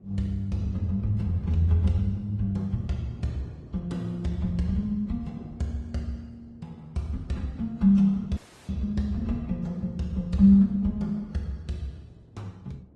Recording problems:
codec artefacts; AAC, then Opus, log-spectral distance 2 dB, nothing above 10.1 kHz
wind noise; below 290 Hz, SNR 24 dB
audio cutting out; at 8.5 s

